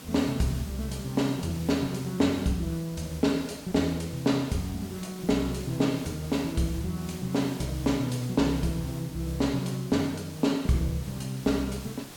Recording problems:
hiss; SNR 15 dB

